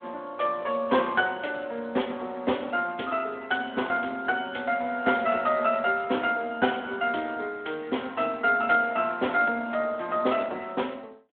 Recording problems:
phone line; 190 Hz to 3.5 kHz, Speex

